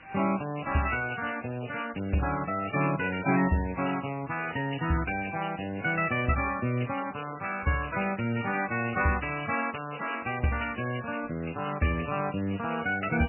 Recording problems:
codec artefacts; MP3, log-spectral distance 15 dB, nothing above 2.4 kHz
background hiss; SNR 22 dB
crackling; from 8 to 11 s; loose cable, SNR 28 dB

